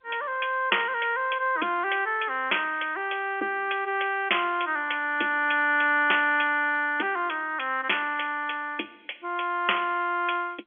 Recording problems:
telephone audio; 260 Hz to 3.4 kHz, G.711

